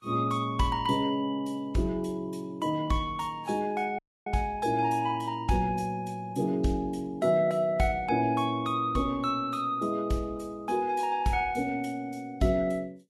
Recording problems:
lossy codec; Vorbis, log-spectral distance 2 dB, nothing above 12.7 kHz
dropout; at 4 s

